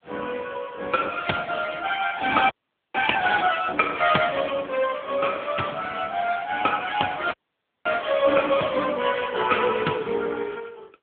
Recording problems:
phone line; 220 Hz to 3.5 kHz, AMR-NB
audio freezing; at 2.5 s and at 7.5 s for 0.5 s

